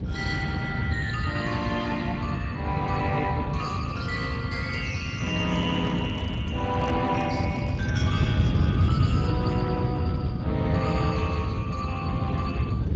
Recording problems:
lossy compression; Speex, log-spectral distance 3 dB, nothing above 7.3 kHz
rumble; below 190 Hz, SNR -1 dB
microphone handling noise; from 5 to 8 s; peak -5 dB vs average level

